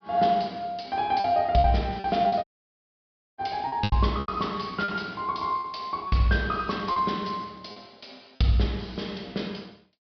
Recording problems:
treble missing; nothing above 5.5 kHz
lost packets; 6% of the sound replaced, filled with repeated pitch periods
audio cutting out; at 2.5 s for 1 s

